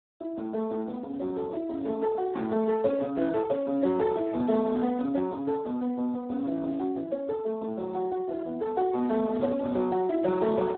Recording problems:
telephone audio; 190 Hz to 2.2 kHz, Speex

